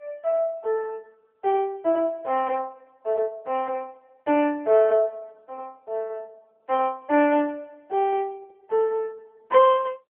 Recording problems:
telephone audio; 280 Hz to 3.2 kHz, AMR-NB

